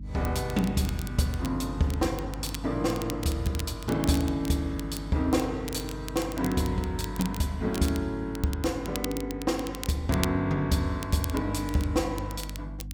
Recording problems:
hum; 50 Hz, harmonics up to 300 Hz, SNR 11 dB
crackle; vinyl, SNR 13 dB

